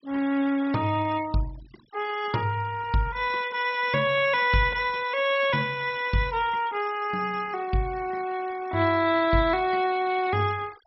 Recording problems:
treble missing; nothing above 5.5 kHz
noise reduction artefacts; signal-to-artefact ratio 19 dB

